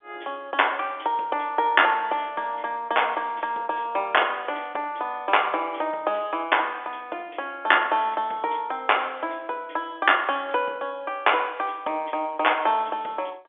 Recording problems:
telephone audio; 260 Hz to 3.5 kHz, G.711

